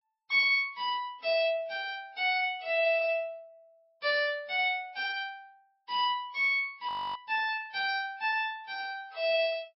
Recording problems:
lossy compression; MP3, log-spectral distance 2 dB, nothing above 4.9 kHz
audio freezing; at 7 s

